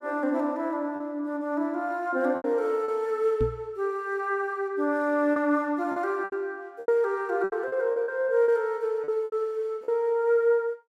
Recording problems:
lost packets; 7% of the sound replaced, filled with repeated pitch periods
knock on the microphone; at 3.5 s; peak 0 dB vs average level

